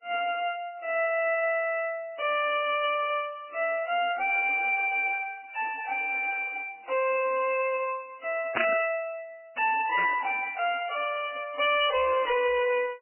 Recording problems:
codec artefacts; MP3, log-spectral distance 6 dB, nothing above 2.4 kHz
distortion; soft clipping, signal-to-distortion ratio 10 dB
burst of static; at 8.5 s and at 10 s; peak +4 dB vs average level

